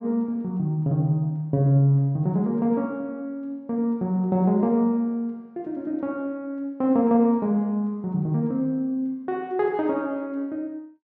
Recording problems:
none

